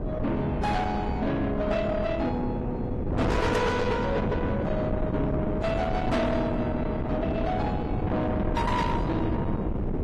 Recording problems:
codec artefacts; AAC, then AAC, log-spectral distance 2 dB, nothing above 13.3 kHz
distortion; soft clipping, signal-to-distortion ratio 7 dB
wind on the microphone; below 470 Hz, SNR 2 dB

